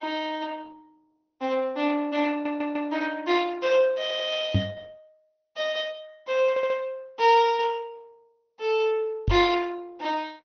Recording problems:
low-pass filter; nothing above 6 kHz
codec artefacts; Opus, log-spectral distance 3 dB
stutter; at 2.5 s, at 4 s and at 6.5 s
knock on the microphone; at 4.5 s and at 9.5 s; peak +6 dB vs average level

